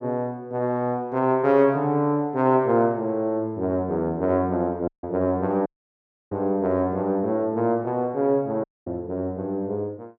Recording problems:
audio cutting out; at 5 s, at 5.5 s for 0.5 s and at 8.5 s

